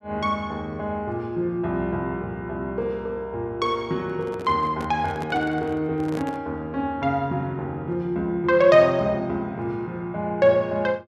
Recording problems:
microphone handling noise; from 4 to 6.5 s; peak -5 dB vs average level

